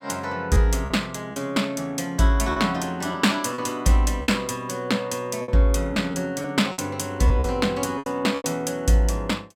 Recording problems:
lost packets; 7% of the sound replaced, filled with repeated pitch periods

